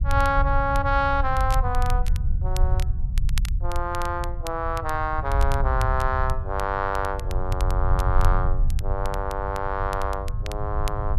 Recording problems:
rumble; below 74 Hz, SNR 0 dB
crackling; vinyl, SNR 16 dB

